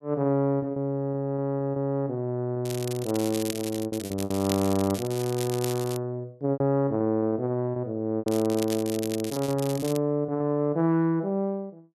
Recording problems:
packet loss; 8% of the sound replaced, filled with repeated pitch periods
crackle; from 2.5 to 6 s and from 8.5 to 10 s; loose cable, SNR 11 dB

